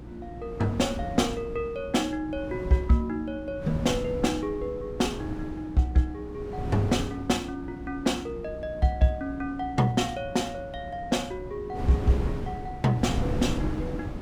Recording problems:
electrical hum; 60 Hz, harmonics up to 360 Hz, SNR 17 dB
wind on the microphone; below 280 Hz, SNR 8 dB

